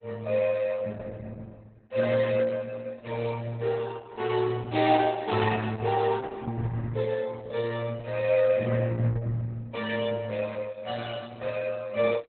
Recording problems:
lossy compression; Opus, log-spectral distance 4 dB, nothing above 4 kHz

